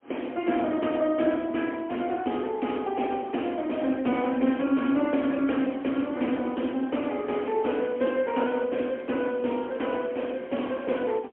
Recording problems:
telephone audio; 190 Hz to 3.3 kHz, AMR-NB, then MP3

